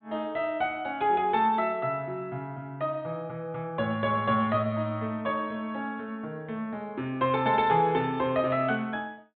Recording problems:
treble cut off; nothing above 4 kHz

